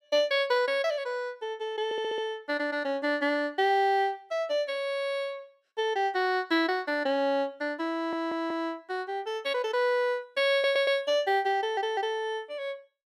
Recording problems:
audio stuttering; 4 times, first at 2 s

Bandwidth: 16 kHz